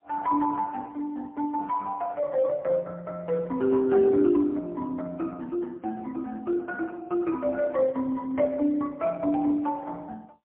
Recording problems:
phone line; 190 Hz to 2.7 kHz, AMR-NB, then MP3

